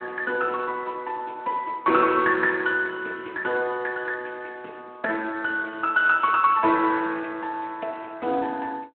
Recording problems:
phone line; 240 Hz to 3.6 kHz, Speex

